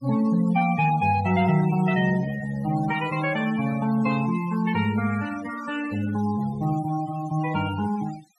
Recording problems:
denoising artefacts; signal-to-artefact ratio 14 dB

